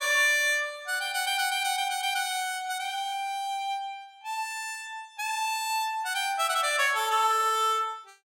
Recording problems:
none

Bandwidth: 16.5 kHz